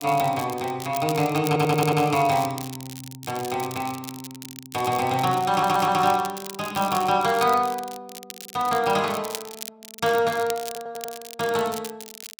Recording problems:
crackling; vinyl, SNR 14 dB
stutter; at 1.5 s, at 5.5 s and at 11 s

